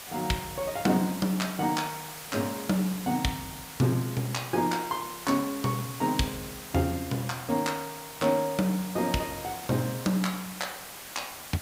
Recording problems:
background hiss; slope -1 dB per octave, SNR 11 dB

